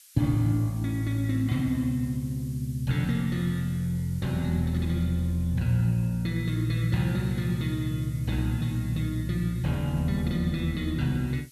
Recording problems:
hiss; SNR 24 dB

